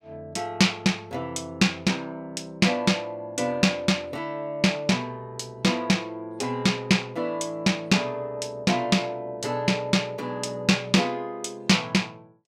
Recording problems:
none

